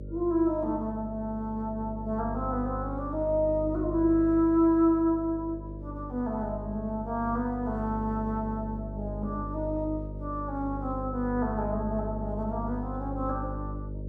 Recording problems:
hum; 50 Hz, harmonics up to 600 Hz, SNR 8 dB

